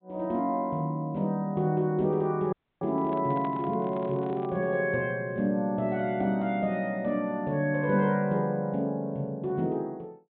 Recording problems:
treble cut off; nothing above 4 kHz
dropout; at 2.5 s
handling noise; from 3 to 4.5 s; peak -8 dB vs average level

